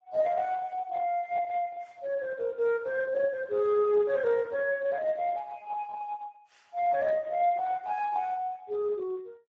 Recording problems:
lossy compression; Speex, log-spectral distance 3 dB

